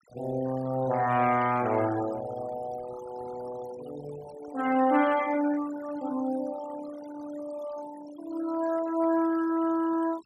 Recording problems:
noise reduction artefacts; signal-to-artefact ratio 17 dB

